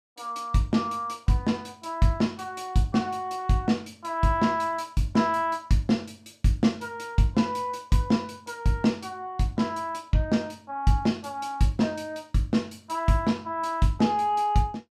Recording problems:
none

